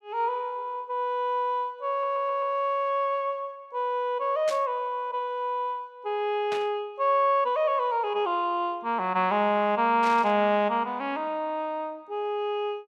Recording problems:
stutter; at 2 s
static burst; at 4.5 s, at 6.5 s and at 10 s; peak -6 dB vs average level

